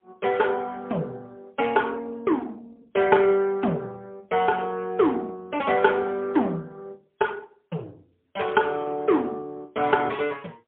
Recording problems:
telephone audio; 260 Hz to 3.3 kHz, AMR-NB, then MP3

